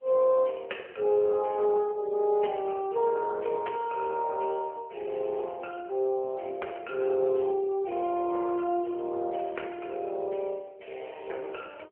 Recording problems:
phone line; 320 Hz to 3.1 kHz, AMR-NB

